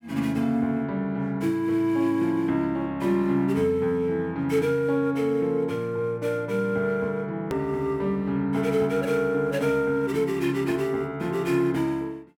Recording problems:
click at an edit; at 7.5 s

